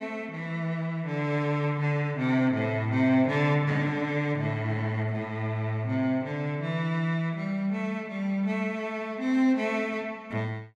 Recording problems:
none

